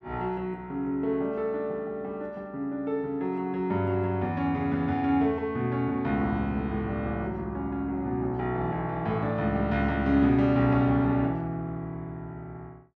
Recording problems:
none

